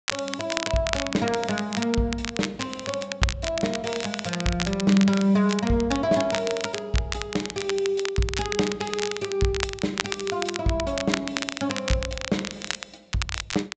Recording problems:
low-pass filter; nothing above 8 kHz
crackling; vinyl, SNR 6 dB

